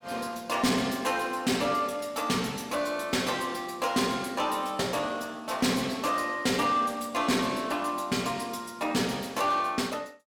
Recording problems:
distortion; soft clipping, signal-to-distortion ratio 11 dB

